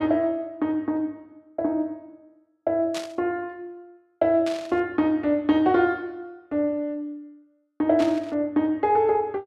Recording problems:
burst of static; at 3 s, at 4.5 s and at 8 s; peak -5 dB vs average level

